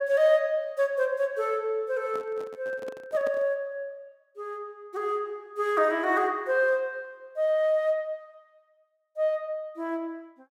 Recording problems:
handling noise; from 2 to 3.5 s; peak -9 dB vs average level

